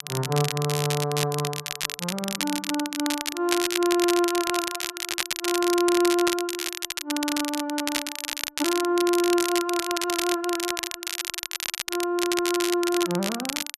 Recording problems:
crackling; vinyl, SNR 3 dB

